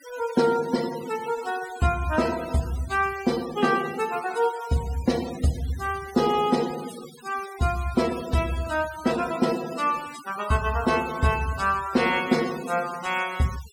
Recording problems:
denoising artefacts; signal-to-artefact ratio 15 dB

